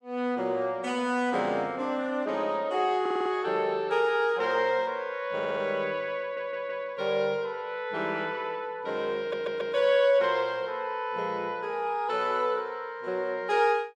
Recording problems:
stutter; 4 times, first at 3 s

